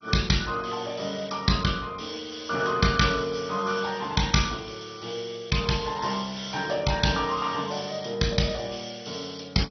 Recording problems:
lossy compression; MP2, log-spectral distance 8 dB, nothing above 6 kHz

